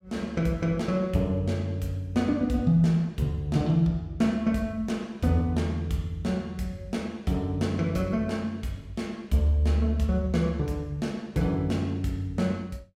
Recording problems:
none

